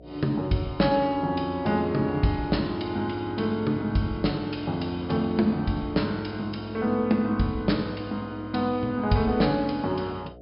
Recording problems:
treble missing; nothing above 5.5 kHz
hum; 60 Hz, harmonics up to 720 Hz, SNR 21 dB

